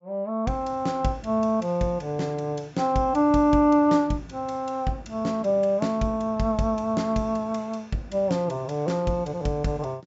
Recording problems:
treble cut off; nothing above 8 kHz

